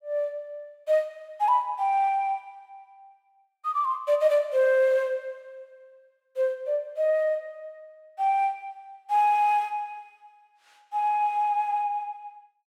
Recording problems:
none

